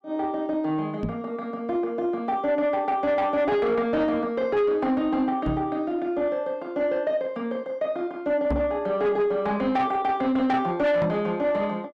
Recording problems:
distorted audio; soft clipping, signal-to-distortion ratio 12 dB
microphone thump; 4 times, first at 1 s; peak +2 dB vs average level

